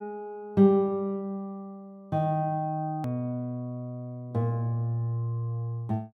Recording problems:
click at an edit; at 3 s

